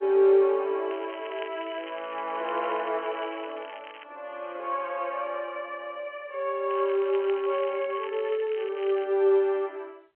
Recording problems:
phone line; 340 Hz to 3.3 kHz, G.711
crackling; from 1 to 4 s and from 6.5 to 9 s; loose cable, SNR 18 dB

